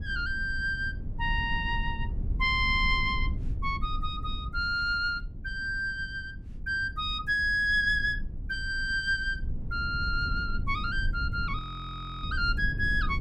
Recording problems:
rumble; below 88 Hz, SNR 7 dB
audio freezing; at 12 s for 0.5 s

